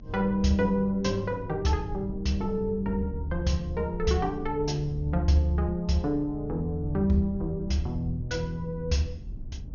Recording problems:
treble missing; nothing above 6.7 kHz
rumble; below 100 Hz, SNR 13 dB

